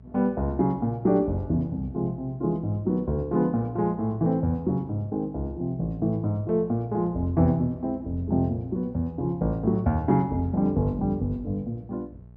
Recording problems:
electrical hum; 60 Hz, harmonics up to 660 Hz, SNR 22 dB

